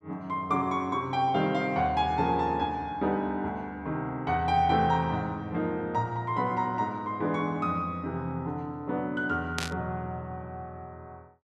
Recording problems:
static burst; at 9.5 s; peak +1 dB vs average level

